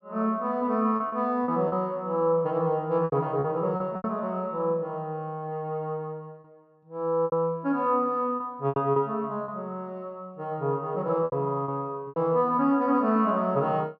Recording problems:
lost packets; 7% of the sound replaced, filled with repeated pitch periods

